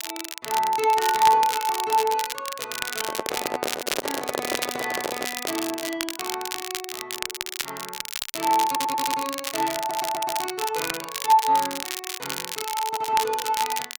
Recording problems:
crackling; vinyl, SNR 5 dB
microphone handling noise; from 3 to 5.5 s; peak +2 dB vs average level
audio stuttering; at 8.5 s, at 10 s and at 13 s

